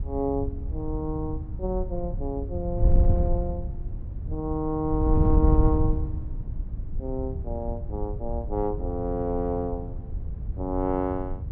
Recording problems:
wind on the microphone; below 92 Hz, SNR 0 dB

